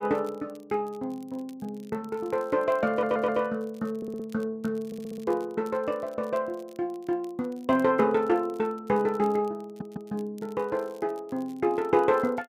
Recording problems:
crackling; vinyl, SNR 29 dB
audio stuttering; 4 times, first at 3 s

